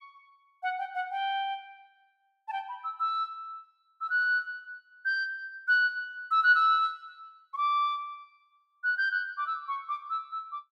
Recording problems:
none

